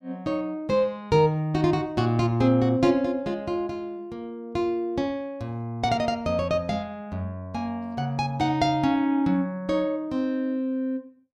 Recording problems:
none

